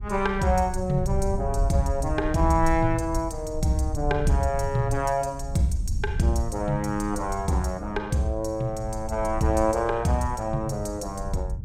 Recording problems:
wind on the microphone; below 80 Hz, SNR 7 dB

